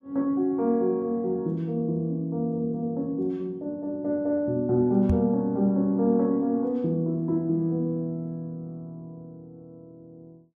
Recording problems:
knock on the microphone; at 5 s; peak +4 dB vs average level

